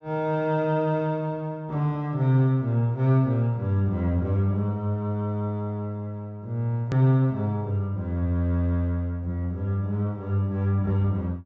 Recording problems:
treble missing; nothing above 8 kHz
click at an edit; at 7 s

